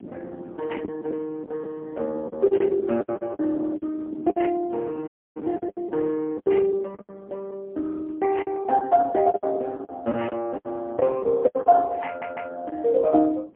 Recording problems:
phone line; 190 Hz to 3.1 kHz, AMR-NB, then MP3
wind on the microphone; below 390 Hz, SNR 20 dB
packet loss; 12% of the sound replaced, filled with the last packet
dropout; at 5 s
audio stuttering; at 12 s

